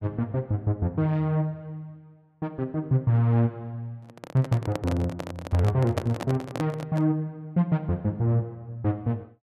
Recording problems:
microphone handling noise; from 4 to 7 s; peak +1 dB vs average level

